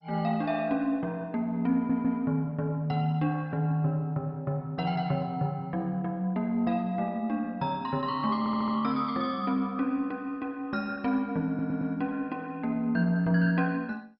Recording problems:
lossy codec; MP2, log-spectral distance 2 dB, nothing above 4.8 kHz
stutter; at 1.5 s, at 8.5 s and at 11 s

